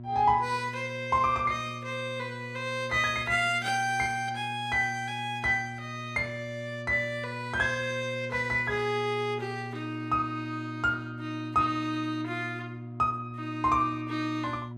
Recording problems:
electrical hum; 60 Hz, harmonics up to 720 Hz, SNR 12 dB

